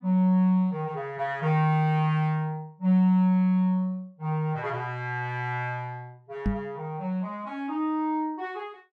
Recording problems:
microphone thump; at 6.5 s; peak +3 dB vs average level

